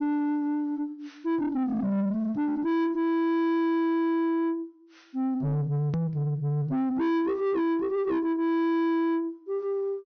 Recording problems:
treble cut off; nothing above 6.2 kHz
distortion; soft clipping, signal-to-distortion ratio 6 dB
edit click; at 6 s

